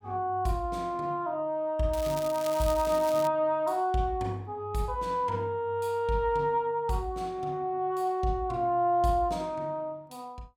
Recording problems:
crackle; from 2 to 3.5 s; loose cable, SNR 13 dB

